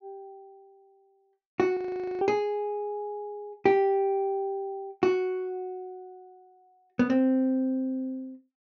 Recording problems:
treble cut off; nothing above 6.7 kHz
frozen audio; at 2 s

